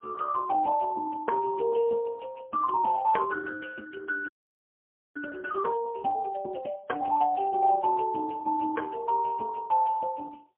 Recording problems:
phone line; 240 Hz to 2.2 kHz, AMR-NB, then MP3
frozen audio; at 4.5 s for 1 s

